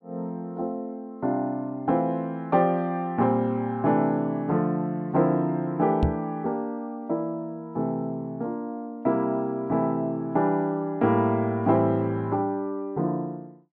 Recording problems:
microphone thump; at 6 s; peak +6 dB vs average level

